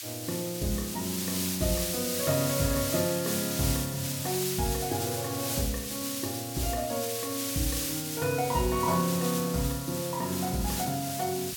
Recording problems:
hiss; slope +5 dB per octave, SNR 2 dB

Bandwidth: 17 kHz